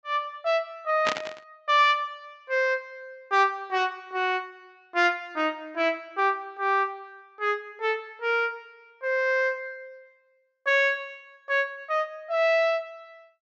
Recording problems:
low-pass filter; nothing above 8 kHz
static burst; at 1 s; peak +3 dB vs average level

